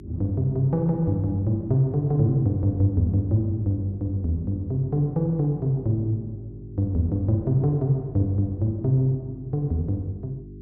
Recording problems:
hum; 50 Hz, harmonics up to 400 Hz, SNR 17 dB

